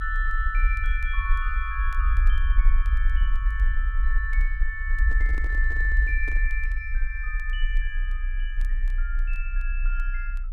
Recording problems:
rumble; below 48 Hz, strongest tone 30 Hz, SNR -5 dB
crackling; vinyl, SNR 30 dB
microphone handling noise; from 5 to 6.5 s; peak -6 dB vs average level

